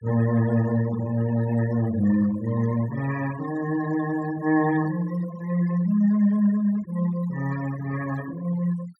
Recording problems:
denoising artefacts; signal-to-artefact ratio 17 dB

